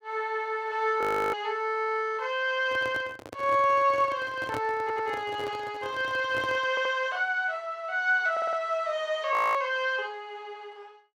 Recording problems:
audio freezing; at 1 s and at 9.5 s
microphone handling noise; from 2.5 to 7 s; peak -5 dB vs average level
audio stuttering; at 5 s, at 6.5 s and at 8.5 s

